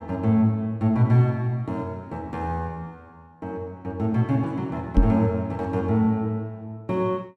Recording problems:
microphone thump; at 5 s; peak +8 dB vs average level

